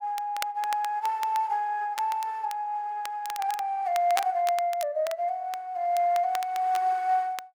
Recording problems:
crackle; vinyl, SNR 15 dB

